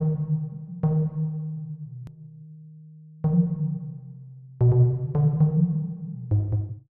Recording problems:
click at an edit; at 2 s

